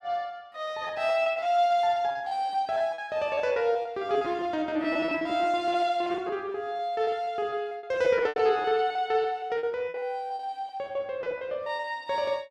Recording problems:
lost packets; 18% of the sound replaced, filled with repeated pitch periods

